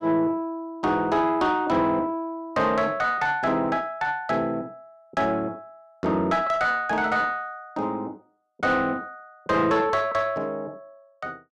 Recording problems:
distorted audio; soft clipping, signal-to-distortion ratio 11 dB

